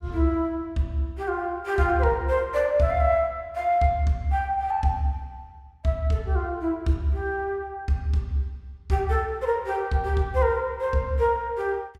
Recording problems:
none

